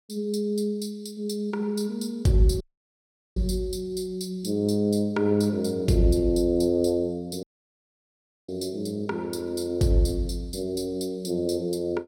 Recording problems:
audio cutting out; at 2.5 s for 1 s and at 7.5 s for 1 s

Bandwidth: 16 kHz